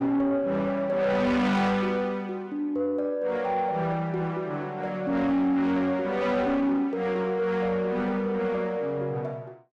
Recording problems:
distortion; soft clipping, signal-to-distortion ratio 12 dB

